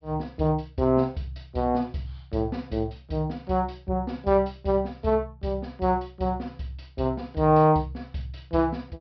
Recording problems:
treble cut off; nothing above 5.5 kHz

